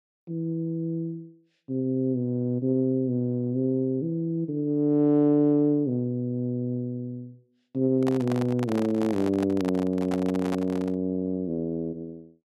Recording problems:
microphone handling noise; from 8 to 11 s; peak -4 dB vs average level

